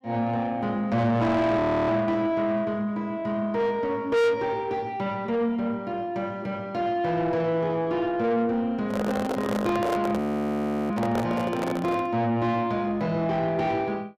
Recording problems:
distortion; soft clipping, signal-to-distortion ratio 7 dB
frozen audio; at 1.5 s and at 10 s for 0.5 s
microphone handling noise; from 9 to 12 s; peak +1 dB vs average level

